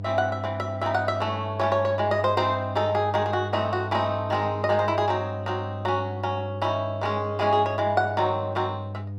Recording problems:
electrical hum; 50 Hz, harmonics up to 500 Hz, SNR 9 dB

